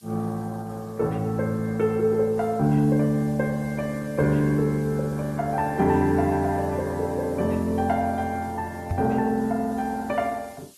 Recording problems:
codec artefacts; Opus, log-spectral distance 3 dB
hiss; slope +3 dB per octave, SNR 28 dB
microphone bump; at 9 s; peak +1 dB vs average level

